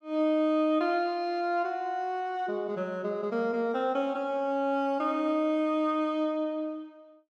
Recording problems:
none

